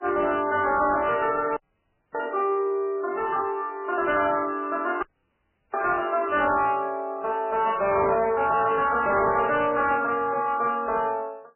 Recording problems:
lossy codec; MP3, log-spectral distance 3 dB, nothing above 3 kHz
distorted audio; soft clipping, signal-to-distortion ratio 11 dB
audio cutting out; at 1.5 s for 0.5 s and at 5 s for 0.5 s

